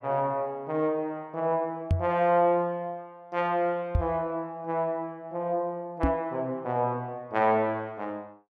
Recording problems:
knock on the microphone; at 2 s, at 4 s and at 6 s; peak +7 dB vs average level

